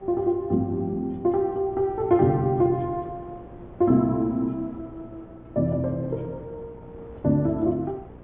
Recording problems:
treble missing; nothing above 3.6 kHz
hum; 60 Hz, harmonics up to 960 Hz, SNR 25 dB
wind noise; below 540 Hz, SNR 23 dB

